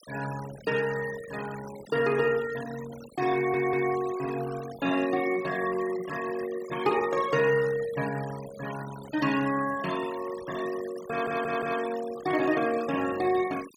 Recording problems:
noise reduction artefacts; signal-to-artefact ratio 15 dB
audio stuttering; at 3.5 s and at 11 s

